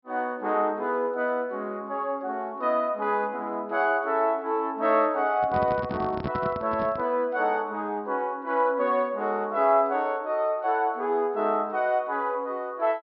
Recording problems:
treble missing; nothing above 5.4 kHz
handling noise; from 5.5 to 7 s; peak -2 dB vs average level

